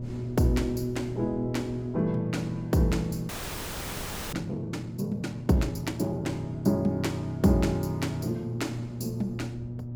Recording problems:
hum; 60 Hz, harmonics up to 600 Hz, SNR 8 dB
wind noise; below 230 Hz, SNR 18 dB
frozen audio; at 3.5 s for 1 s

